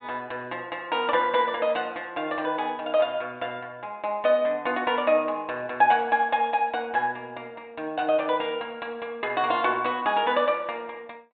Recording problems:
low-pass filter; nothing above 4 kHz

